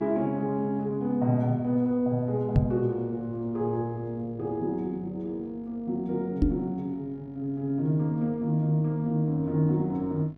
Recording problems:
hum; 50 Hz, harmonics up to 1.8 kHz, SNR 26 dB
knock on the microphone; at 2.5 s and at 6.5 s; peak +8 dB vs average level

